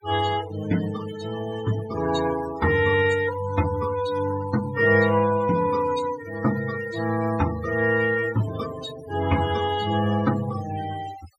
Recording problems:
noise reduction artefacts; signal-to-artefact ratio 14 dB

